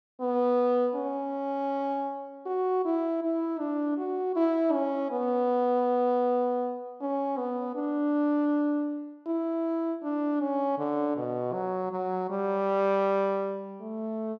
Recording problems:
none

